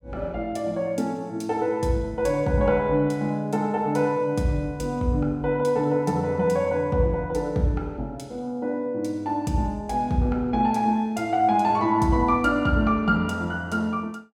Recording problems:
none

